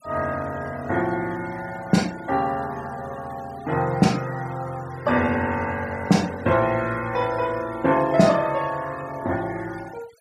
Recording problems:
denoising artefacts; signal-to-artefact ratio 19 dB

